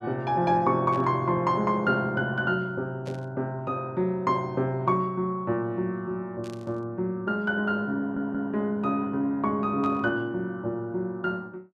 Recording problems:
burst of static; 4 times, first at 1 s; peak -14 dB vs average level
stutter; at 8 s

